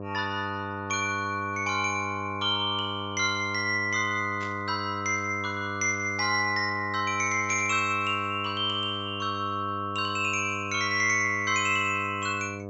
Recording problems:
treble cut off; nothing above 8 kHz
hum; 50 Hz, harmonics up to 1.2 kHz, SNR 11 dB
burst of static; at 4.5 s and at 7.5 s; peak -12 dB vs average level

